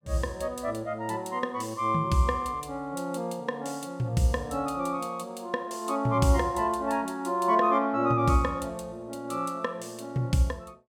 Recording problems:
none

